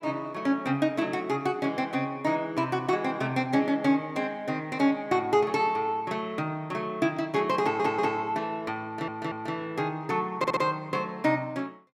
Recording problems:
audio stuttering; at 7.5 s, at 9 s and at 10 s

